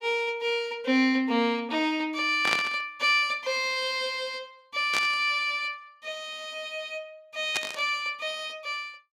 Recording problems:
burst of static; at 2.5 s, at 5 s and at 7.5 s; peak +3 dB vs average level

